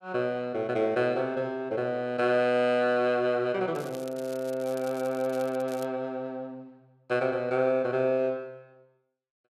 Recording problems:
crackling; from 3.5 to 6 s; loose cable, SNR 21 dB

